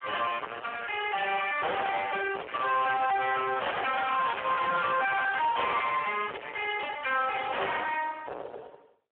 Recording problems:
telephone audio; 340 Hz to 3.2 kHz, Speex
distortion; soft clipping, signal-to-distortion ratio 4 dB

